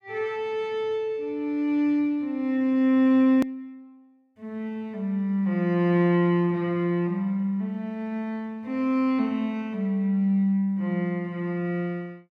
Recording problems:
click at an edit; at 3.5 s

